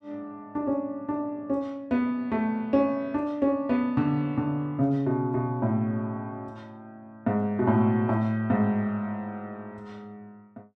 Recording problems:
none

